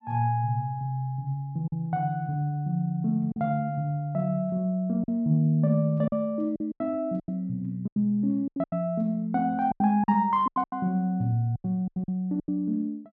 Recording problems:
lost packets; 9% of the sound replaced, filled with silence

